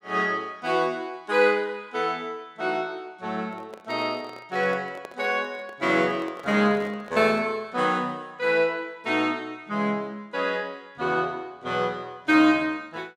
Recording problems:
microphone handling noise; from 3.5 to 7.5 s; peak -9 dB vs average level

